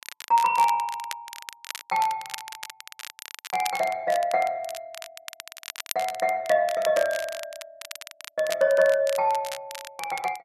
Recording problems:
crackle; vinyl, SNR 13 dB

